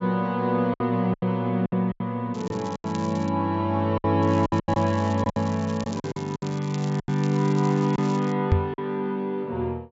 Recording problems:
treble cut off; nothing above 8 kHz
packet loss; 10% of the sound replaced, filled with silence
crackling; at 2.5 s and from 4 to 8.5 s; loose cable, SNR 20 dB
knock on the microphone; at 8.5 s; peak +8 dB vs average level

